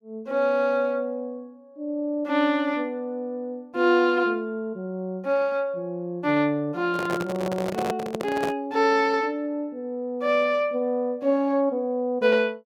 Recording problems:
microphone handling noise; from 7 to 8.5 s; peak 0 dB vs average level

